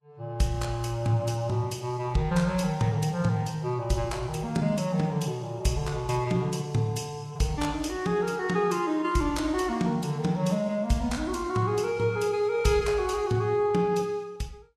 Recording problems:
lossy compression; Vorbis, log-spectral distance 2 dB, nothing above 12.7 kHz

